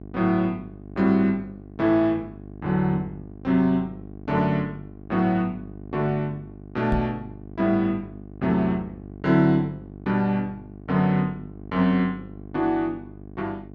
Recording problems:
hum; 50 Hz, harmonics up to 800 Hz, SNR 17 dB
knock on the microphone; at 7 s; peak +1 dB vs average level

